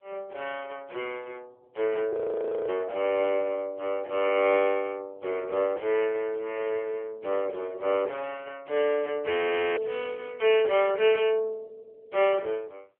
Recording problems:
telephone audio; 320 Hz to 3.2 kHz, AMR-NB
frozen audio; at 2 s for 0.5 s and at 9.5 s

